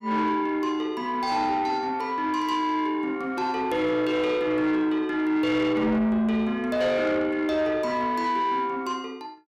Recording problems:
distorted audio; soft clipping, signal-to-distortion ratio 12 dB

